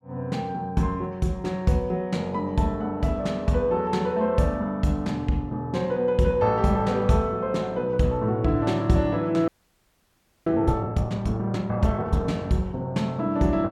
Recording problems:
frozen audio; at 9.5 s for 1 s

